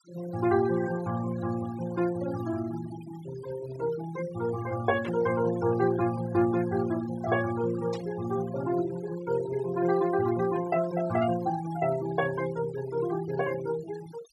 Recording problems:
noise reduction artefacts; signal-to-artefact ratio 14 dB
burst of static; at 5 s and at 8 s; peak -10 dB vs average level

